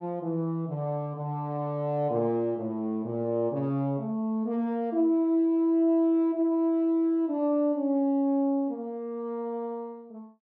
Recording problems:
none

